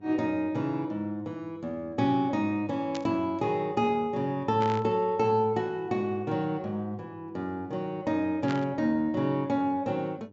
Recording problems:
low-pass filter; nothing above 8 kHz
hum; 50 Hz, harmonics up to 900 Hz, SNR 25 dB
static burst; at 3 s, at 4.5 s and at 8.5 s; peak -5 dB vs average level

